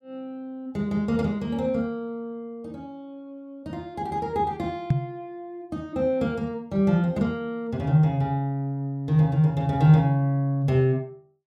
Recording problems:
knock on the microphone; at 5 s; peak +7 dB vs average level

